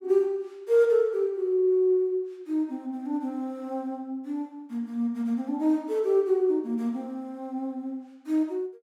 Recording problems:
none

